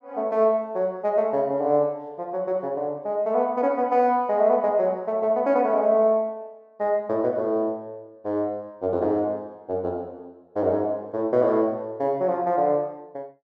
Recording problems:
none

